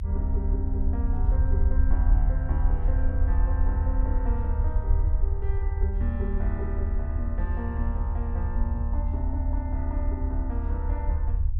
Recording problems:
low-frequency rumble; below 74 Hz, SNR -9 dB

